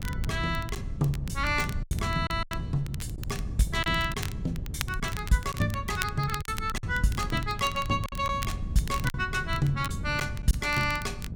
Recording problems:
wind on the microphone; below 140 Hz, SNR 6 dB
crackle; vinyl, SNR 13 dB
lost packets; 6% of the sound replaced, filled with silence

